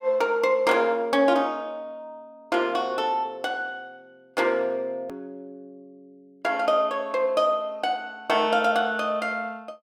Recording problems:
click at an edit; at 5 s

